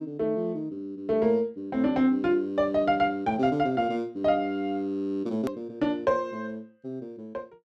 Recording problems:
click at an edit; at 5.5 s

